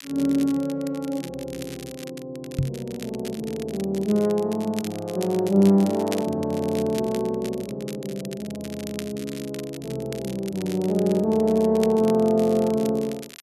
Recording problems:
crackle; vinyl, SNR 17 dB
microphone thump; at 2.5 s; peak +3 dB vs average level

